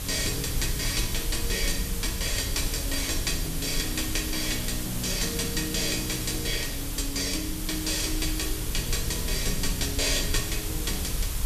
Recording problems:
hiss; slope -1 dB per octave, SNR 5 dB
low-frequency rumble; below 64 Hz, SNR 7 dB
wind on the microphone; below 420 Hz, SNR 19 dB

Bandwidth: 14.5 kHz